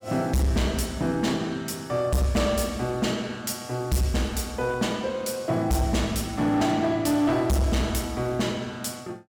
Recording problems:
distorted audio; hard clipping, signal-to-distortion ratio 8 dB

